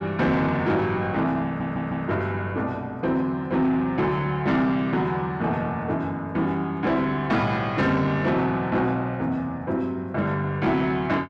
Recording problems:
distortion; soft clipping, signal-to-distortion ratio 12 dB
stutter; at 1.5 s

